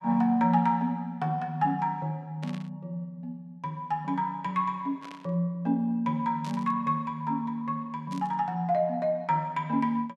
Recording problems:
burst of static; 4 times, first at 2.5 s; peak -12 dB vs average level

